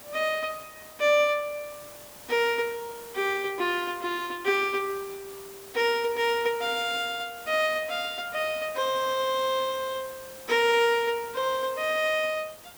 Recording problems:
background hiss; slope -3 dB per octave, SNR 17 dB

